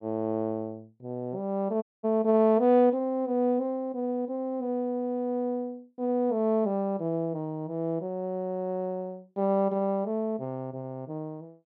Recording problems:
dropout; at 2 s

